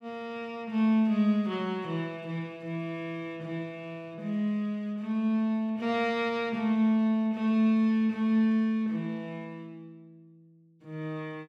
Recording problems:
none

